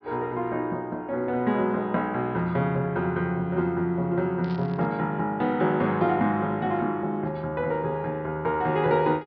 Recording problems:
low-pass filter; nothing above 5.5 kHz
burst of static; at 4.5 s; peak -16 dB vs average level

